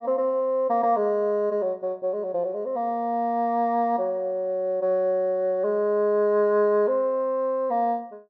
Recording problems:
low-pass filter; nothing above 6.1 kHz

